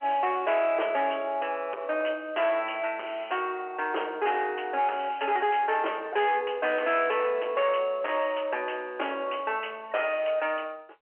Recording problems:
telephone audio; 340 Hz to 3.2 kHz, G.711
distortion; soft clipping, signal-to-distortion ratio 10 dB

